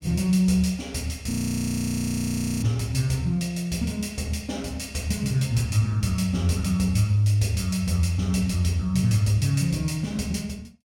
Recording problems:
audio freezing; at 1.5 s for 1.5 s

